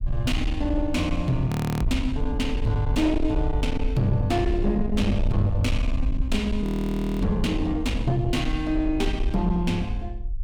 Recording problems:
distortion; soft clipping, signal-to-distortion ratio 10 dB
rumble; below 68 Hz, SNR 4 dB
audio freezing; at 1.5 s and at 6.5 s for 0.5 s

